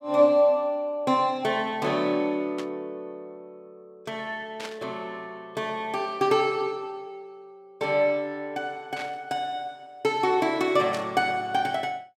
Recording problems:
static burst; 4 times, first at 2.5 s; peak -6 dB vs average level

